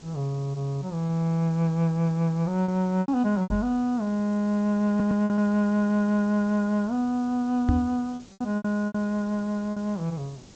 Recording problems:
lossy codec; G.722, log-spectral distance 2 dB
background hiss; SNR 24 dB
lost packets; 6% of the sound replaced, filled with repeated pitch periods
microphone bump; at 3.5 s and at 7.5 s; peak +5 dB vs average level
stutter; at 5 s and at 5.5 s

